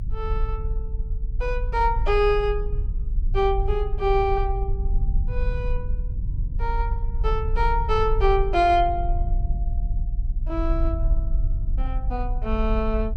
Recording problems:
rumble; below 50 Hz, strongest tone 30 Hz, SNR 2 dB

